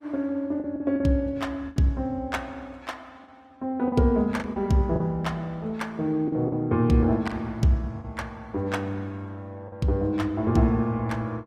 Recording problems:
lossy compression; Opus, log-spectral distance 2 dB, nothing above 16.6 kHz
lost packets; 5% of the sound replaced, filled with the last packet

